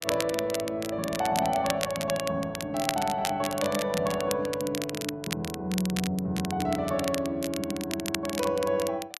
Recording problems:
crackling; vinyl, SNR 7 dB

